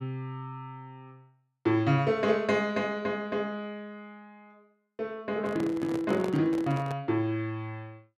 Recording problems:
handling noise; from 5.5 to 7 s; peak -3 dB vs average level

